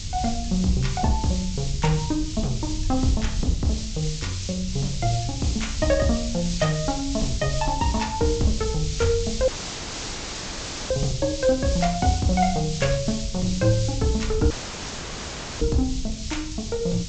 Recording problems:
treble cut off; nothing above 8 kHz
hiss; SNR 9 dB
wind on the microphone; below 84 Hz, SNR 8 dB
audio cutting out; at 9.5 s for 1.5 s and at 15 s for 1 s

